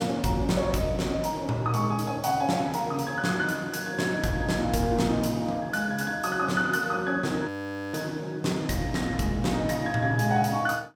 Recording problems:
audio freezing; at 7.5 s

